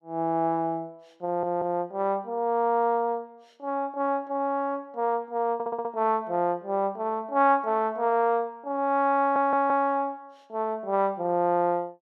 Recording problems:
stutter; at 1.5 s, at 5.5 s and at 9 s

